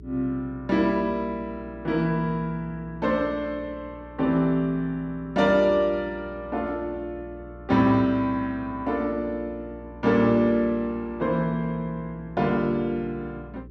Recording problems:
mains hum; 60 Hz, harmonics up to 420 Hz, SNR 20 dB

